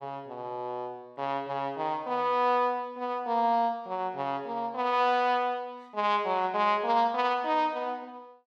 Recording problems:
none

